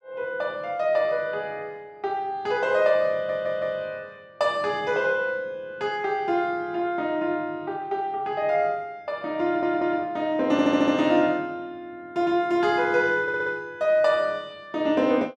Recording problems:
audio stuttering; 4 times, first at 3 s

